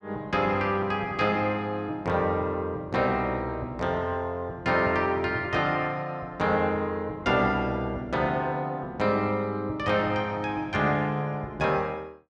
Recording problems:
none

